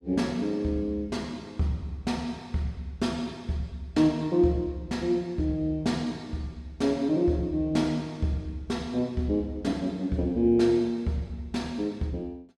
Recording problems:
none

